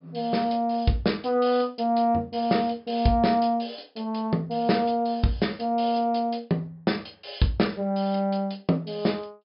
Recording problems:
low-pass filter; nothing above 5.5 kHz

